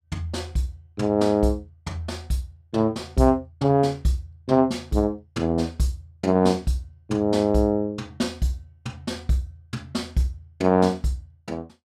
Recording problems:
none

